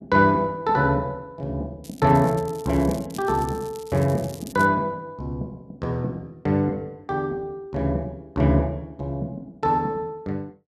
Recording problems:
crackle; from 2 to 4.5 s; loose cable, SNR 20 dB

